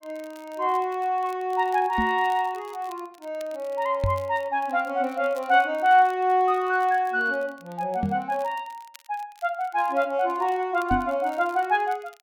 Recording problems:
crackling; vinyl, SNR 28 dB
microphone thump; 4 times, first at 2 s; peak +1 dB vs average level

